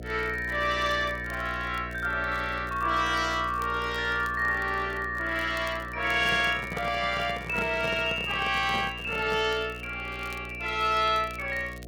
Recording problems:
electrical hum; 60 Hz, harmonics up to 720 Hz, SNR 14 dB
crackle; vinyl, SNR 26 dB
microphone handling noise; from 6 to 9.5 s; peak -3 dB vs average level

